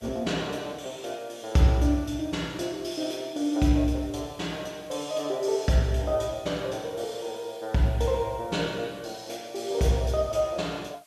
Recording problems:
hiss; slope +1 dB per octave, SNR 28 dB

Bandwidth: 13.5 kHz